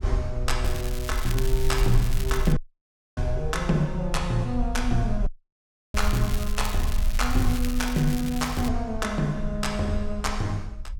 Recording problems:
rumble; below 48 Hz, strongest tone 22 Hz, SNR 4 dB
crackling; from 0.5 to 2.5 s and from 6 to 8.5 s; loose cable, SNR 10 dB
audio cutting out; at 2.5 s for 0.5 s and at 5.5 s for 0.5 s

